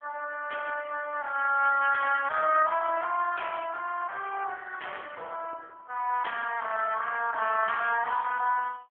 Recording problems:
phone line; 410 Hz to 3 kHz, AMR-NB

